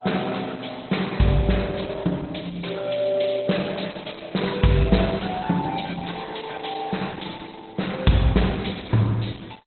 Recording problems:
lossy codec; Opus, then MP2, log-spectral distance 8 dB, nothing above 4.1 kHz

